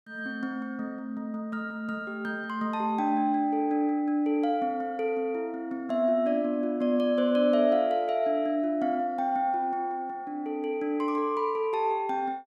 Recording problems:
none

